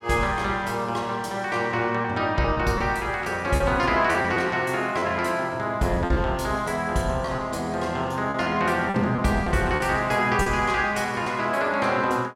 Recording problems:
lost packets; 5% of the sound replaced, filled with repeated pitch periods

